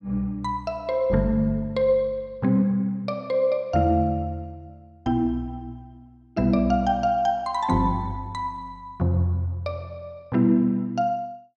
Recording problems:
none

